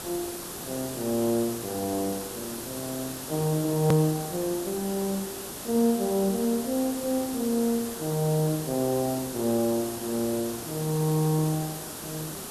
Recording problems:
hiss; SNR 8 dB
edit click; at 4 s

